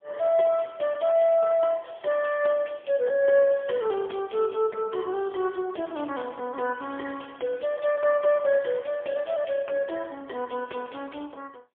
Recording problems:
phone line; 320 Hz to 3.4 kHz, AMR-NB, then MP3

